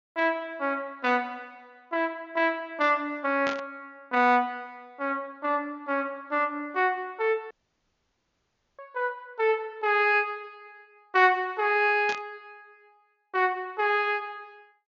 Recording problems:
treble missing; nothing above 7.1 kHz
static burst; at 3.5 s and at 12 s; peak -4 dB vs average level
audio cutting out; at 7.5 s for 1.5 s

